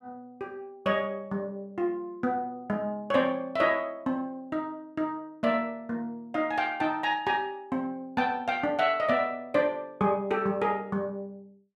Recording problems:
none

